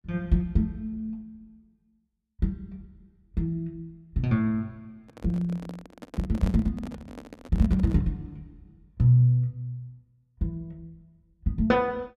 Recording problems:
handling noise; from 5 to 8 s; peak -5 dB vs average level

